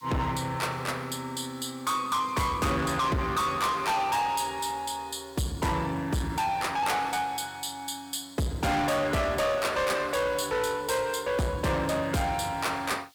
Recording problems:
distorted audio; soft clipping, signal-to-distortion ratio 6 dB
background hiss; slope +4 dB per octave, SNR 28 dB

